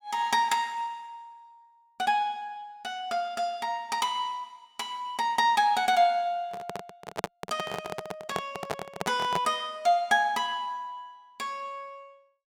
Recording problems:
microphone handling noise; from 6.5 to 9.5 s; peak +2 dB vs average level

